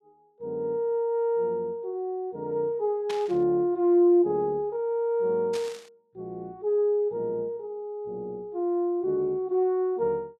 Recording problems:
burst of static; at 3 s and at 5.5 s; peak -7 dB vs average level

